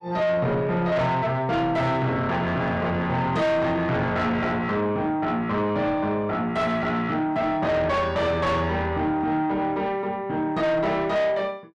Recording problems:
distortion; soft clipping, signal-to-distortion ratio 8 dB

